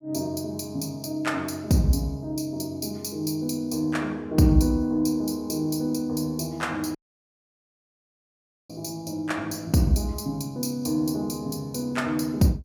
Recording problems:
audio cutting out; at 7 s for 1.5 s

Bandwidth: 18.5 kHz